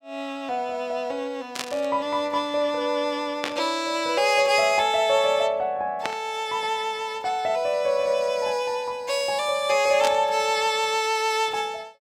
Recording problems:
burst of static; 4 times, first at 1.5 s; peak -1 dB vs average level

